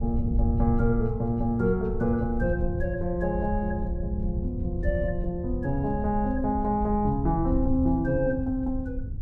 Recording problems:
wind noise; below 92 Hz, SNR 5 dB

